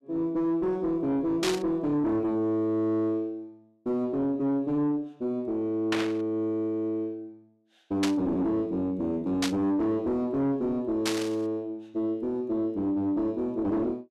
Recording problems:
distortion; soft clipping, signal-to-distortion ratio 10 dB
burst of static; 5 times, first at 1.5 s; peak +3 dB vs average level

